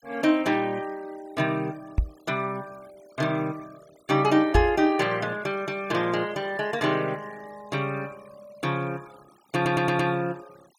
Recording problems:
noise reduction artefacts; signal-to-artefact ratio 25 dB
knock on the microphone; at 2 s and at 4.5 s; peak +6 dB vs average level
audio stuttering; at 9.5 s

